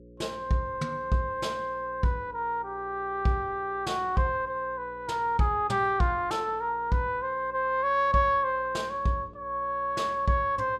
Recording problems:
electrical hum; 60 Hz, harmonics up to 540 Hz, SNR 23 dB

